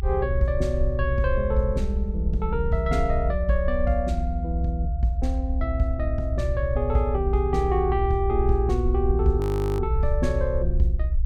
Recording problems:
low-frequency rumble; below 72 Hz, strongest tone 58 Hz, SNR 1 dB
frozen audio; at 9.5 s

